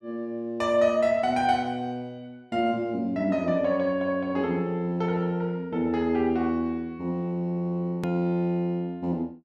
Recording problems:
hard cut with a click; at 8 s

